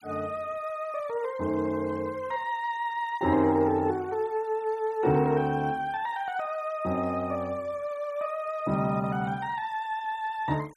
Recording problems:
denoising artefacts; signal-to-artefact ratio 25 dB

